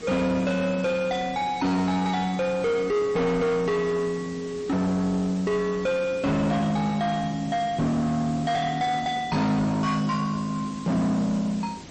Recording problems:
codec artefacts; MP3, log-spectral distance 4 dB, nothing above 8.2 kHz
distortion; soft clipping, signal-to-distortion ratio 7 dB
background hiss; SNR 17 dB

